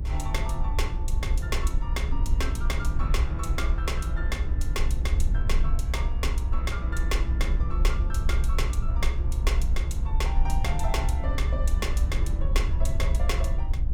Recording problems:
low-frequency rumble; below 62 Hz, SNR -7 dB

